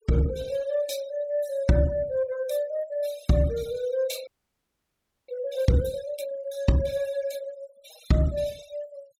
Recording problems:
noise reduction artefacts; signal-to-artefact ratio 19 dB
audio freezing; at 4.5 s for 1 s

